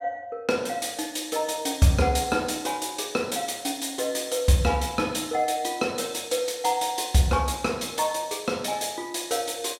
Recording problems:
none

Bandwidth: 16.5 kHz